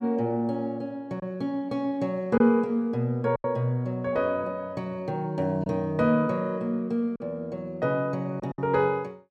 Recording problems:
packet loss; 3% of the sound replaced, filled with silence

